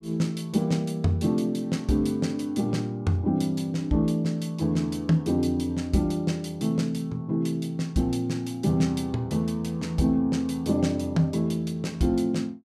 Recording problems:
none

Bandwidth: 15 kHz